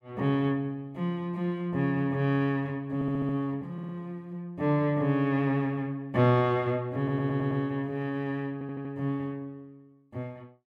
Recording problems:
stutter; 4 times, first at 3 s

